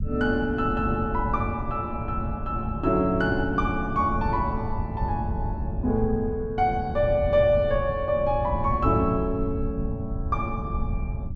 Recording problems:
low-frequency rumble; below 120 Hz, SNR 6 dB

